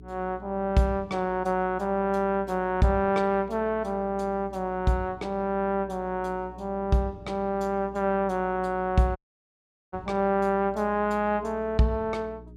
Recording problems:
hum; 60 Hz, harmonics up to 420 Hz, SNR 20 dB
dropout; at 9 s for 1 s

